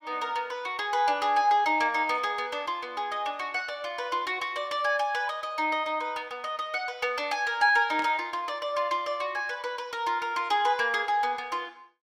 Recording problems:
burst of static; at 8 s; peak -7 dB vs average level

